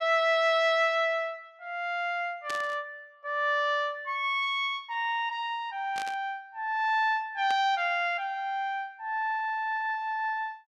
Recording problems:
burst of static; at 2.5 s, at 6 s and at 7.5 s; peak -6 dB vs average level

